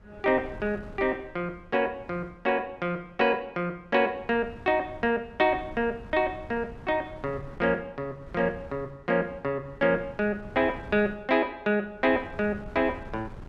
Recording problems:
wind on the microphone; below 260 Hz, SNR 19 dB

